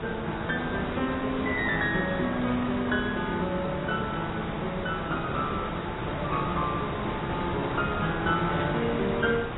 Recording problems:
codec artefacts; AAC, log-spectral distance 12 dB, nothing above 3.2 kHz
hiss; SNR 4 dB
static burst; at 8.5 s; peak -8 dB vs average level

